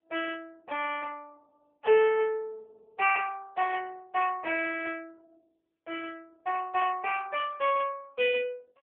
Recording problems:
telephone audio; 370 Hz to 3.3 kHz, AMR-NB

